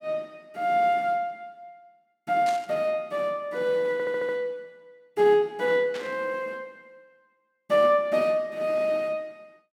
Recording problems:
burst of static; at 2.5 s and at 6 s; peak -8 dB vs average level
audio stuttering; at 4 s

